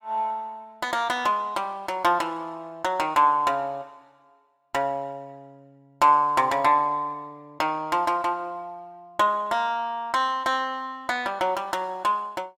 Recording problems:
none

